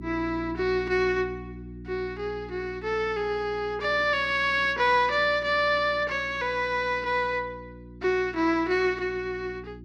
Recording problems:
hum; 60 Hz, harmonics up to 360 Hz, SNR 17 dB

